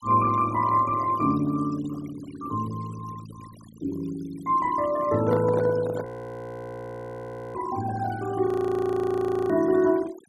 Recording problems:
noise reduction artefacts; signal-to-artefact ratio 18 dB
handling noise; from 5 to 6 s; peak 0 dB vs average level
frozen audio; at 6 s for 1.5 s and at 8.5 s for 1 s

